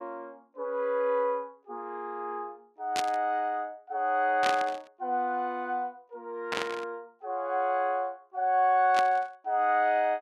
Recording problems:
static burst; 4 times, first at 3 s; peak +1 dB vs average level

